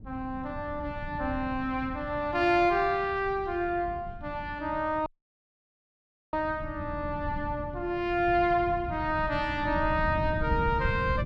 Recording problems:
wind noise; below 150 Hz, SNR 10 dB
audio cutting out; at 5 s for 1.5 s

